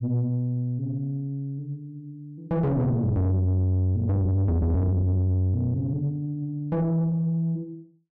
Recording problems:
distortion; soft clipping, signal-to-distortion ratio 7 dB

